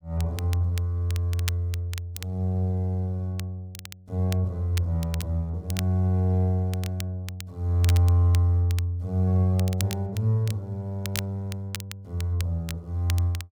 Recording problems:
crackling; vinyl, SNR 15 dB

